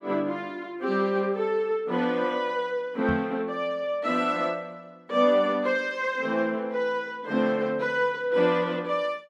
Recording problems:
microphone bump; at 3 s; peak -2 dB vs average level

